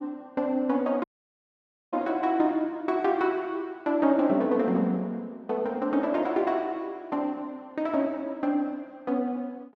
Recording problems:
audio cutting out; at 1 s for 1 s

